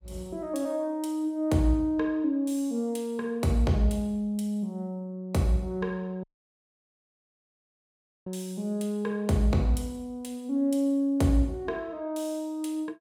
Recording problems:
audio cutting out; at 6 s for 2 s

